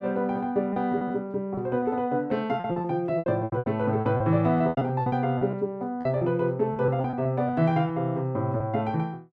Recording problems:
lost packets; 12% of the sound replaced, filled with repeated pitch periods

